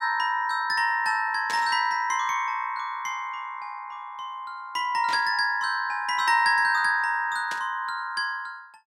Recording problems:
burst of static; at 1.5 s, at 5 s and at 7.5 s; peak -5 dB vs average level

